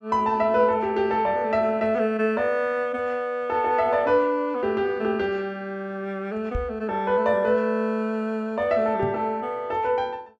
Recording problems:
knock on the microphone; at 6.5 s and at 9 s; peak -2 dB vs average level

